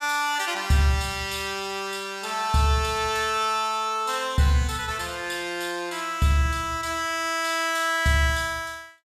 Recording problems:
none

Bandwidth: 15.5 kHz